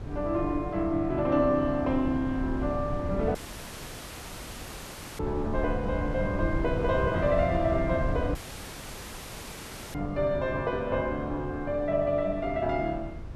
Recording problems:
wind noise; below 150 Hz, SNR 8 dB
dropout; at 3.5 s for 2 s and at 8.5 s for 1.5 s

